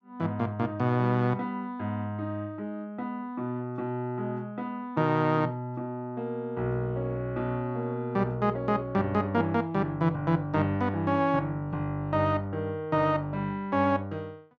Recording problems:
none

